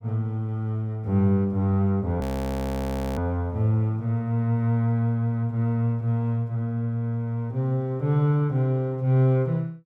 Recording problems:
frozen audio; at 2 s for 1 s

